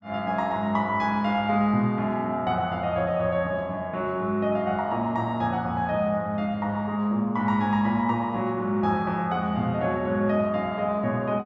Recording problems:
none

